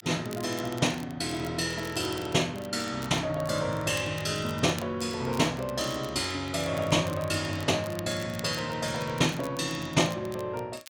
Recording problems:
crackling; vinyl, SNR 19 dB

